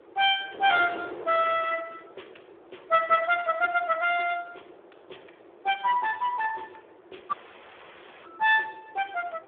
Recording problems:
phone line; 300 Hz to 3.5 kHz, Speex
wind on the microphone; below 680 Hz, SNR 20 dB
dropout; at 7.5 s for 1 s

